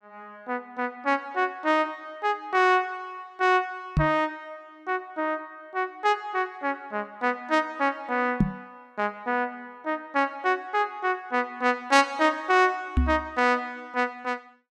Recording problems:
knock on the microphone; at 4 s, at 8.5 s and at 13 s; peak +8 dB vs average level

